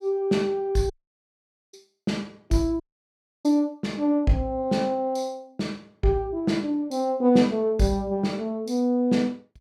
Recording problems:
audio cutting out; at 1 s for 1 s and at 3 s for 0.5 s

